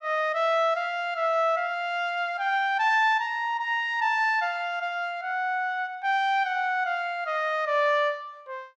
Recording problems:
none

